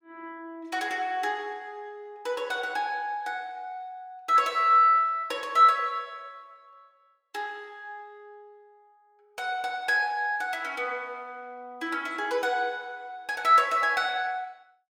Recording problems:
none

